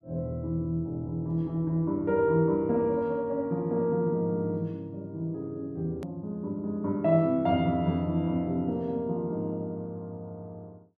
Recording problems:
edit click; at 6 s

